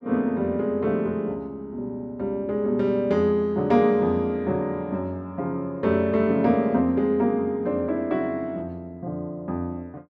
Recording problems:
none

